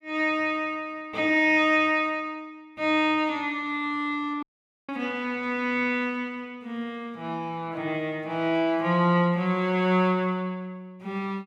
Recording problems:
audio cutting out; at 4.5 s

